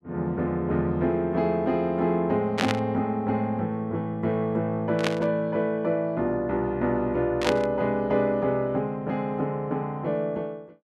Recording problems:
static burst; at 2.5 s, at 5 s and at 7.5 s; peak +4 dB vs average level

